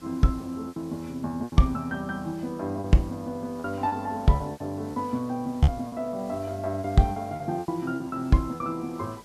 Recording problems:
hum; 50 Hz, harmonics up to 600 Hz, SNR 28 dB
background hiss; slope -2 dB per octave, SNR 24 dB
packet loss; 9% of the sound replaced, filled with repeated pitch periods

